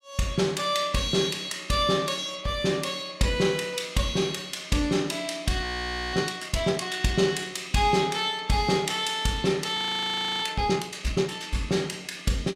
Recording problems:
audio freezing; at 5.5 s for 0.5 s and at 10 s for 0.5 s

